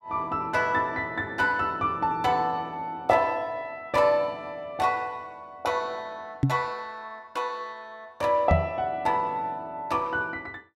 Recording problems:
microphone thump; at 6.5 s and at 8.5 s; peak +8 dB vs average level

